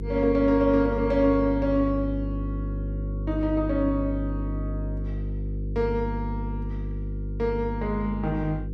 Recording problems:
hum; 50 Hz, harmonics up to 500 Hz, SNR 6 dB

